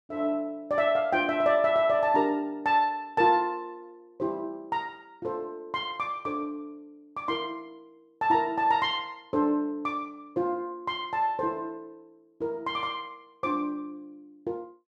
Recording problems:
none

